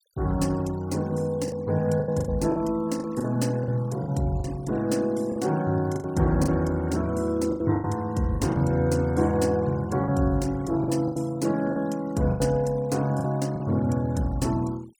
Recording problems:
noise reduction artefacts; signal-to-artefact ratio 23 dB
packet loss; 8% of the sound replaced, filled with the last packet

